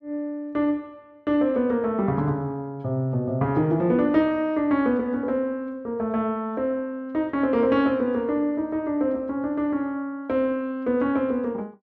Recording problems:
none

